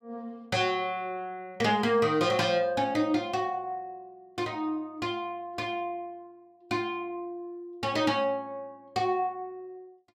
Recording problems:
none

